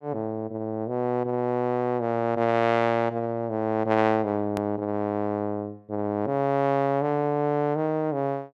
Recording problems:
click at an edit; at 4.5 s

